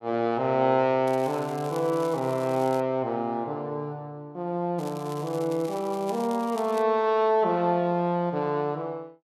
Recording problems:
crackling; from 1 to 3 s and from 5 to 7 s; loose cable, SNR 21 dB

